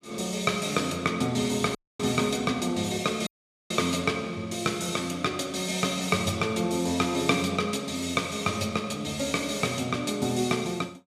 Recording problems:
audio cutting out; at 2 s and at 3.5 s

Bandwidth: 14 kHz